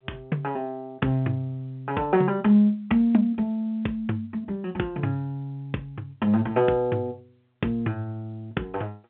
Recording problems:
telephone audio; 170 Hz to 3.5 kHz, G.711

